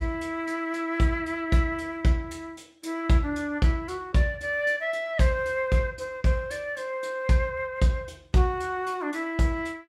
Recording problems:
none

